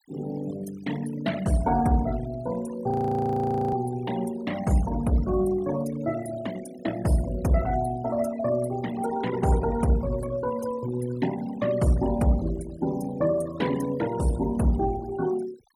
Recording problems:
noise reduction artefacts; signal-to-artefact ratio 16 dB
audio freezing; at 3 s for 1 s

